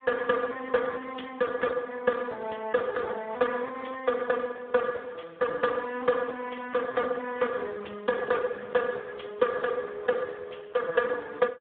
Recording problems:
telephone audio; 280 Hz to 2.8 kHz, Speex

